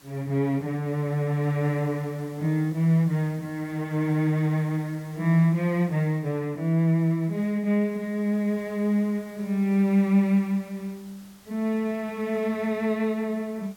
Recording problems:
hiss; slope -2 dB per octave, SNR 27 dB

